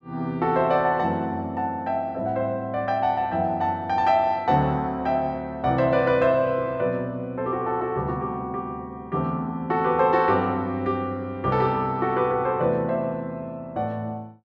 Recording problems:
none

